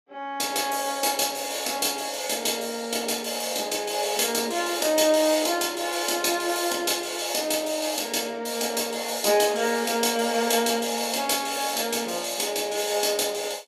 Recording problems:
none

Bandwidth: 14.5 kHz